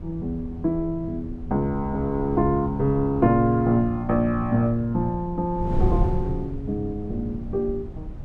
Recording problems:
wind on the microphone; below 130 Hz, SNR 9 dB

